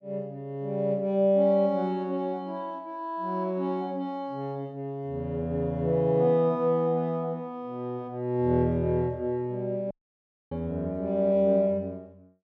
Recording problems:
audio cutting out; at 10 s for 0.5 s

